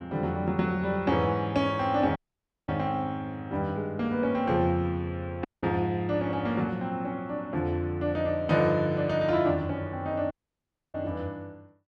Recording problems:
audio cutting out; at 2 s for 0.5 s, at 5.5 s and at 10 s for 0.5 s

